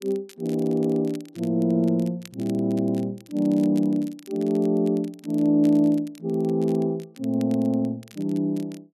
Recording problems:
crackling; vinyl, SNR 26 dB

